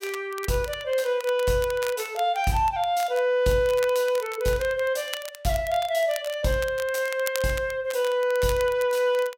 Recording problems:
crackling; vinyl, SNR 16 dB

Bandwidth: 16 kHz